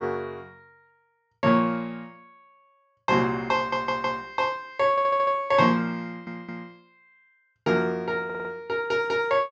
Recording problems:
low-pass filter; nothing above 8 kHz
audio stuttering; 4 times, first at 3.5 s

